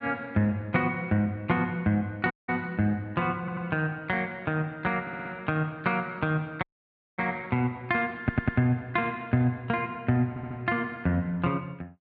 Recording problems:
audio cutting out; at 2.5 s and at 6.5 s for 0.5 s
audio stuttering; 4 times, first at 3.5 s

